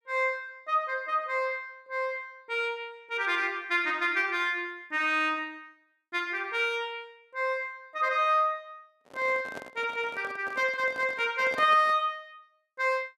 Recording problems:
microphone handling noise; from 9 to 12 s; peak -6 dB vs average level

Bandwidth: 13 kHz